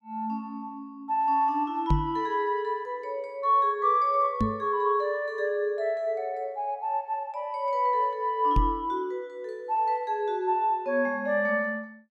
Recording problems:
knock on the microphone; at 2 s, at 4.5 s and at 8.5 s; peak +6 dB vs average level

